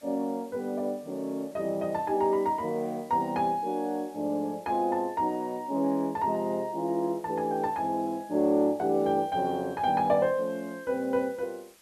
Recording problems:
hiss; slope 0 dB per octave, SNR 27 dB

